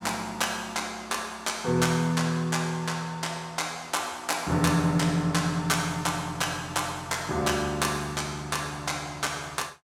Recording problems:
none

